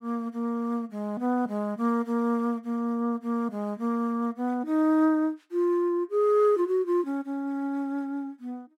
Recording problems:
none

